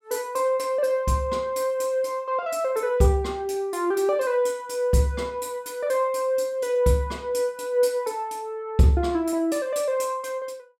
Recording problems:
none

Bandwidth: 16 kHz